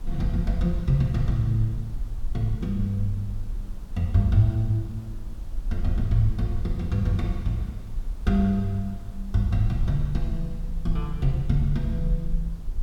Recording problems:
hiss; slope -6 dB per octave, SNR 22 dB
low-frequency rumble; below 46 Hz, SNR 9 dB

